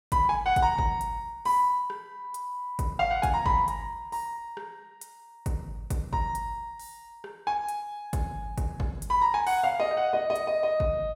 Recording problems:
none

